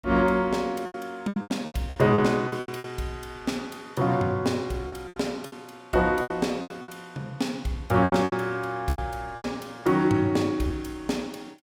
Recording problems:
lost packets; 12% of the sound replaced, filled with repeated pitch periods

